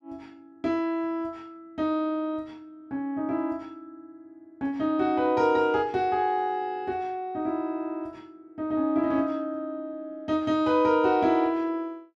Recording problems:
none

